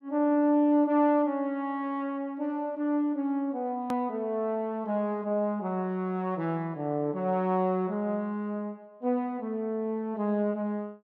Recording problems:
click at an edit; at 4 s

